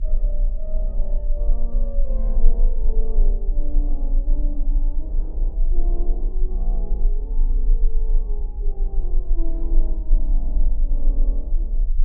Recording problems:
rumble; below 32 Hz, strongest tone 28 Hz, SNR -15 dB

